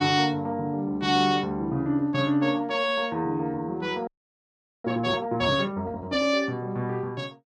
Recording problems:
frozen audio; at 4 s for 1 s

